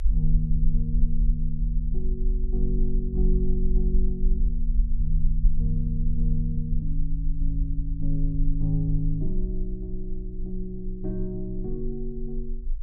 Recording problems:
low-frequency rumble; below 40 Hz, strongest tone 20 Hz, SNR -2 dB

